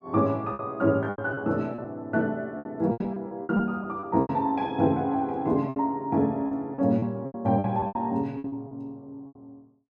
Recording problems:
lost packets; 13% of the sound replaced, filled with repeated pitch periods

